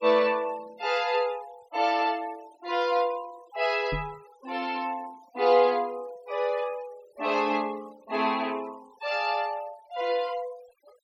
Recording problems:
noise reduction artefacts; signal-to-artefact ratio 22 dB
knock on the microphone; at 4 s; peak -3 dB vs average level

